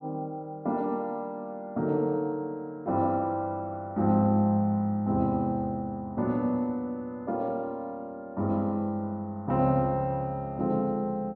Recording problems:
none

